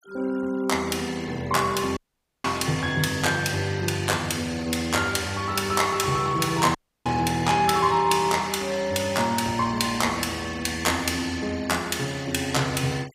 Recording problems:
noise reduction artefacts; signal-to-artefact ratio 20 dB
dropout; at 2 s and at 7 s

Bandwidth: 15.5 kHz